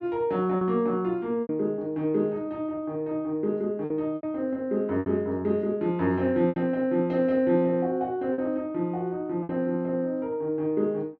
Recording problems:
packet loss; 5% of the sound replaced, filled with repeated pitch periods

